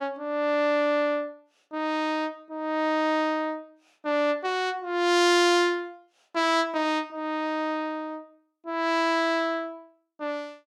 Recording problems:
none

